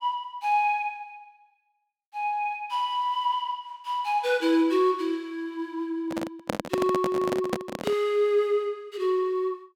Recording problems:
handling noise; from 6 to 8 s; peak +3 dB vs average level

